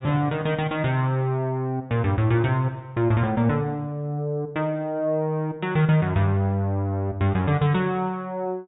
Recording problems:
treble missing; nothing above 4 kHz

